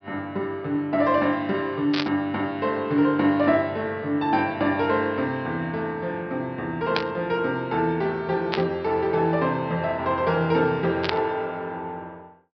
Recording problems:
treble cut off; nothing above 5.5 kHz
burst of static; 4 times, first at 2 s; peak +3 dB vs average level

